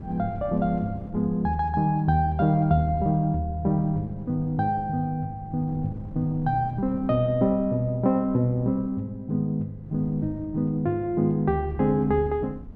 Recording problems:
wind noise; below 220 Hz, SNR 17 dB

